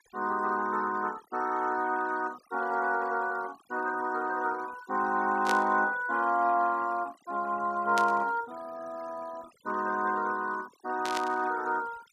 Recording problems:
denoising artefacts; signal-to-artefact ratio 22 dB
burst of static; at 5.5 s, at 8 s and at 11 s; peak 0 dB vs average level

